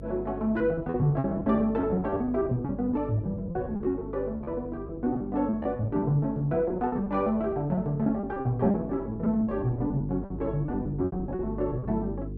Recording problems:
electrical hum; 50 Hz, harmonics up to 450 Hz, SNR 12 dB
packet loss; 15% of the sound replaced, filled with repeated pitch periods

